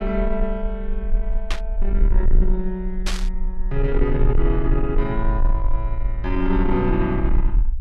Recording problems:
distortion; soft clipping, signal-to-distortion ratio 11 dB
rumble; below 40 Hz, SNR 0 dB
static burst; at 1.5 s and at 3 s; peak +1 dB vs average level

